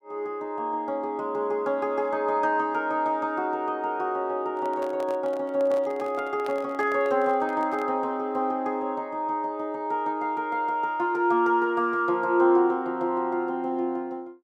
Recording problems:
handling noise; from 4.5 to 8 s; peak -10 dB vs average level

